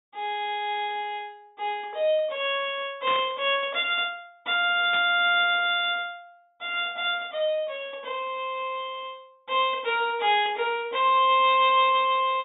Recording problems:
treble cut off; nothing above 4 kHz
burst of static; at 3 s and at 5 s; peak -6 dB vs average level

